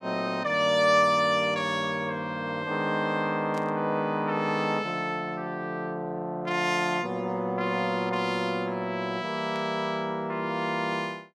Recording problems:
burst of static; at 3.5 s and at 9.5 s; peak -13 dB vs average level

